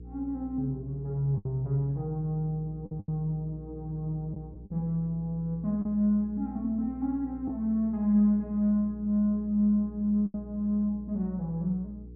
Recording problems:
mains hum; 60 Hz, harmonics up to 480 Hz, SNR 16 dB
packet loss; 3% of the sound replaced, filled with the last packet

